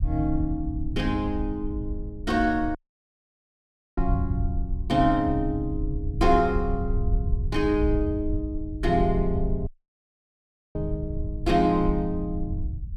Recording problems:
rumble; below 84 Hz, SNR 5 dB
audio cutting out; at 3 s for 1 s and at 9.5 s for 1 s

